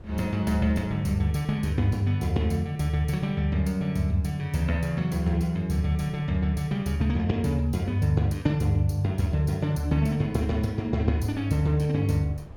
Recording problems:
wind on the microphone; below 220 Hz, SNR 24 dB

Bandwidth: 17.5 kHz